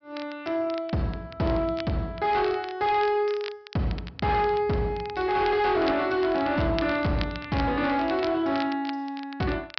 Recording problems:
treble cut off; nothing above 5.5 kHz
distortion; hard clipping, uneven, signal-to-distortion ratio 11 dB
crackling; vinyl, SNR 17 dB

